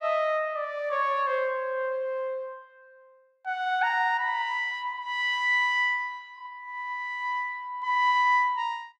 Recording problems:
none

